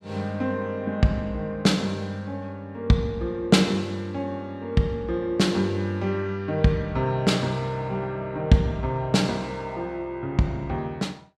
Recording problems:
none

